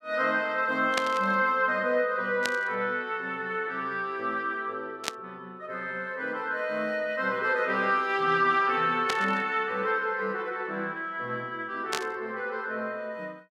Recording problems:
burst of static; 5 times, first at 1 s; peak +3 dB vs average level

